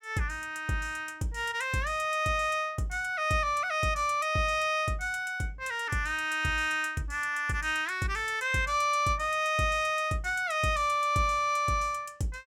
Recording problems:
none

